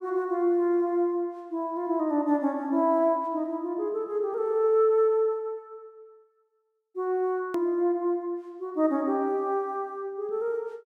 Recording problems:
hard cut with a click; at 7.5 s

